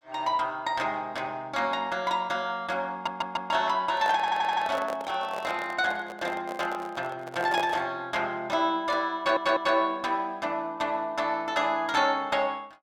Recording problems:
audio stuttering; at 3 s, at 4 s and at 9 s
handling noise; from 4 to 8 s; peak -1 dB vs average level

